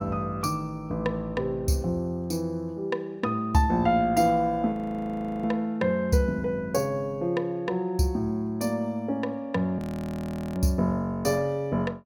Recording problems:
frozen audio; at 4.5 s for 0.5 s and at 10 s for 1 s

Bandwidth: 18 kHz